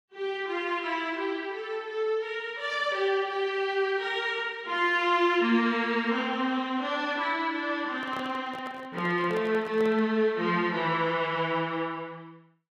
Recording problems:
microphone handling noise; from 8 to 10 s; peak -8 dB vs average level

